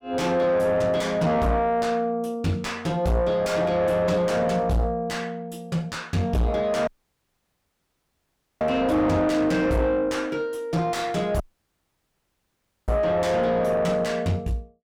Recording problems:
distortion; soft clipping, signal-to-distortion ratio 7 dB
audio cutting out; at 7 s for 1.5 s and at 11 s for 1.5 s

